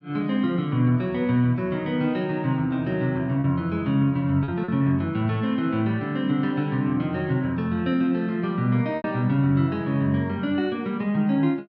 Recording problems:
packet loss; 1.7% of the sound replaced, filled with repeated pitch periods

